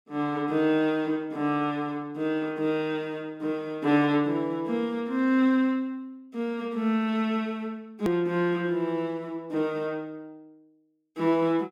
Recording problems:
click at an edit; at 8 s

